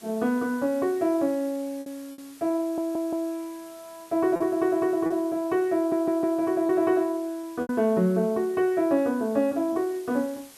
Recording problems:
hiss; slope -1 dB per octave, SNR 24 dB
lost packets; 4% of the sound replaced, filled with repeated pitch periods
audio stuttering; at 2.5 s and at 6 s

